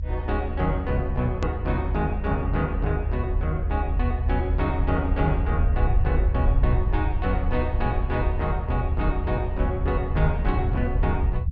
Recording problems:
low-pass filter; nothing above 7.4 kHz
rumble; below 76 Hz, SNR -1 dB
edit click; at 1.5 s

